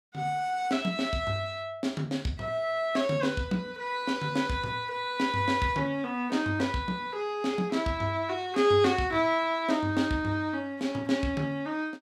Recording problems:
none

